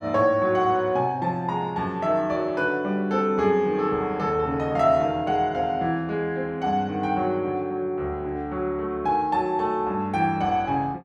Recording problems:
none

